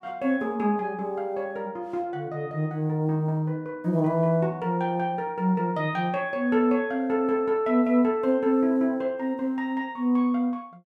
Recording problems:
none

